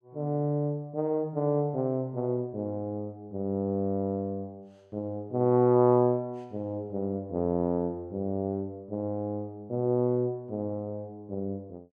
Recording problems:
none

